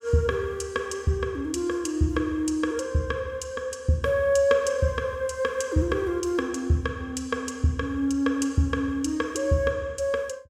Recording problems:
none

